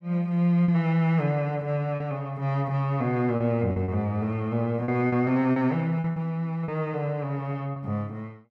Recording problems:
packet loss; 6% of the sound replaced, filled with repeated pitch periods

